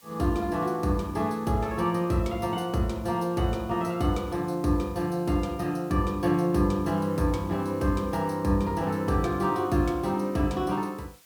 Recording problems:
hiss; slope +1 dB per octave, SNR 27 dB

